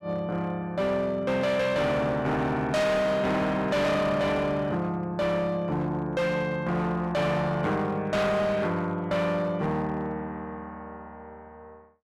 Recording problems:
distortion; hard clipping, signal-to-distortion ratio 8 dB

